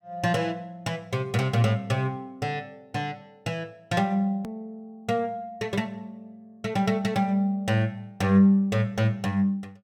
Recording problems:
edit click; at 4.5 s

